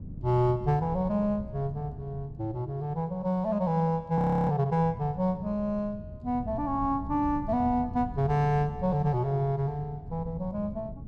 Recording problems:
wind noise; below 160 Hz, SNR 13 dB
audio freezing; at 4 s

